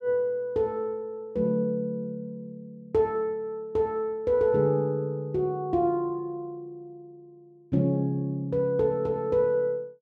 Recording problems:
none

